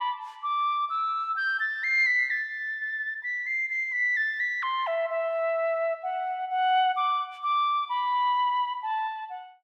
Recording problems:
none

